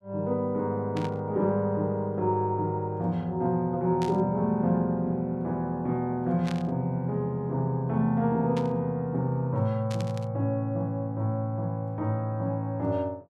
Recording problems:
static burst; 5 times, first at 1 s; peak -8 dB vs average level

